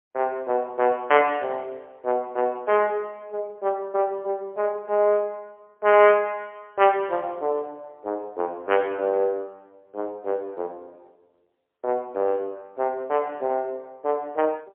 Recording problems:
phone line; 320 Hz to 3.2 kHz, AMR-NB, then MP3

